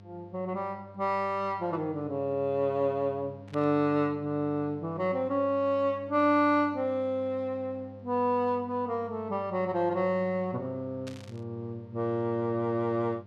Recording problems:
electrical hum; 50 Hz, harmonics up to 1.1 kHz, SNR 19 dB
burst of static; at 3.5 s and at 11 s; peak -11 dB vs average level

